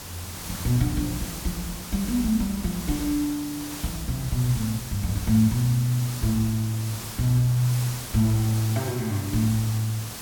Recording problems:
hiss; slope -2 dB per octave, SNR 10 dB

